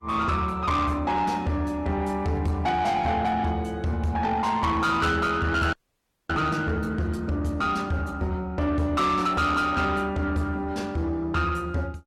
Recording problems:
codec artefacts; Opus, log-spectral distance 2 dB, nothing above 17.1 kHz
distortion; soft clipping, signal-to-distortion ratio 10 dB
audio freezing; at 5.5 s for 0.5 s

